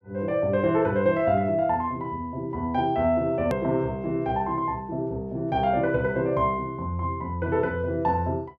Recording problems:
hard cut with a click; at 3.5 s

